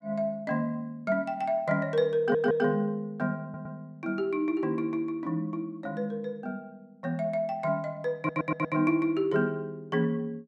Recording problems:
audio stuttering; at 2 s, at 3.5 s and at 8 s

